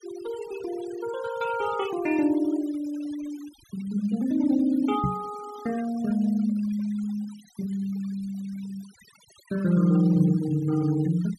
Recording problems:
noise reduction artefacts; signal-to-artefact ratio 20 dB
knock on the microphone; at 5 s; peak +3 dB vs average level

